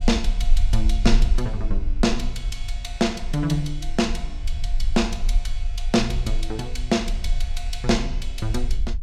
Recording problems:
low-frequency rumble; below 42 Hz, strongest tone 20 Hz, SNR 2 dB

